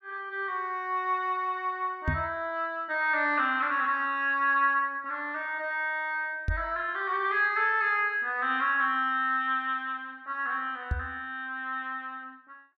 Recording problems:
microphone bump; at 2 s, at 6.5 s and at 11 s; peak +3 dB vs average level

